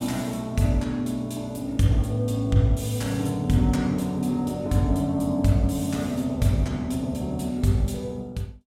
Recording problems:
none

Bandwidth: 16 kHz